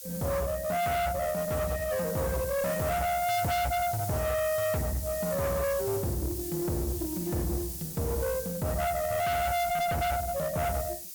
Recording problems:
distortion; hard clipping, uneven, signal-to-distortion ratio 5 dB
background hiss; slope +6 dB per octave, SNR 8 dB

